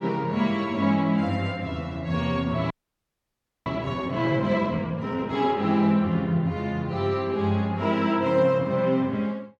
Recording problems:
audio freezing; at 2.5 s for 1 s

